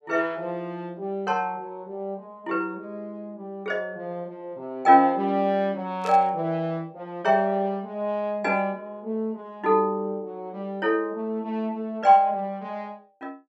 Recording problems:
static burst; at 6 s; peak -11 dB vs average level

